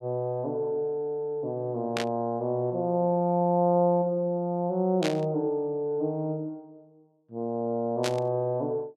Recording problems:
burst of static; at 2 s, at 5 s and at 8 s; peak 0 dB vs average level

